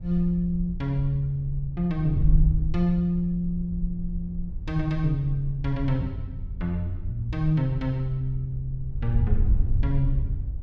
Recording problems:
wind on the microphone; below 66 Hz, SNR 4 dB

